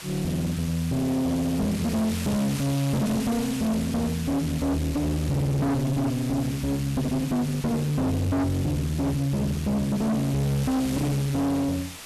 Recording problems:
distorted audio; hard clipping, uneven, signal-to-distortion ratio 5 dB
background hiss; slope 0 dB per octave, SNR 12 dB

